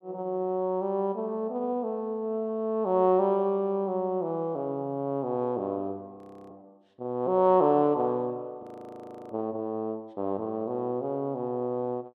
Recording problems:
audio freezing; at 6 s and at 8.5 s for 0.5 s

